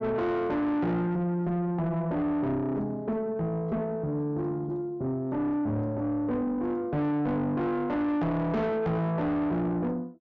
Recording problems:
low-pass filter; nothing above 8 kHz
distortion; soft clipping, signal-to-distortion ratio 8 dB

